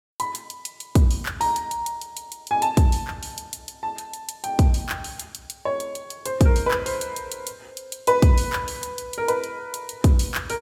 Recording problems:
none

